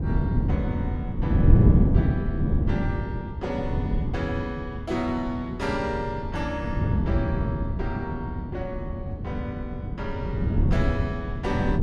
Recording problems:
wind on the microphone; below 180 Hz, SNR -6 dB

